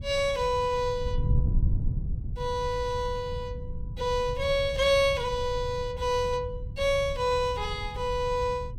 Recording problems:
wind noise; below 110 Hz, SNR 7 dB

